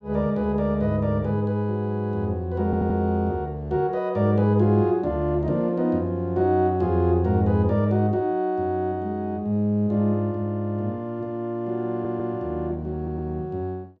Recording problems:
stutter; at 2.5 s, at 12 s and at 13 s

